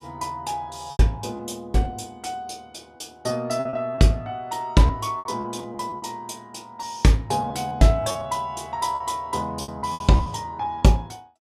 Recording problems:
packet loss; 9% of the sound replaced, filled with repeated pitch periods

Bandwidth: 14.5 kHz